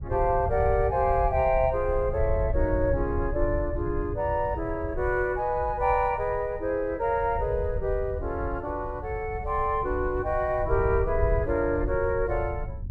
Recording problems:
rumble; below 90 Hz, SNR 7 dB

